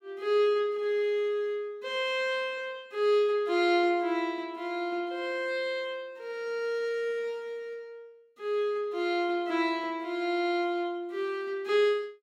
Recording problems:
none

